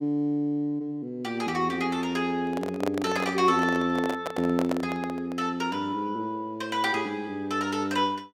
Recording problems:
microphone handling noise; from 2.5 to 5.5 s; peak 0 dB vs average level

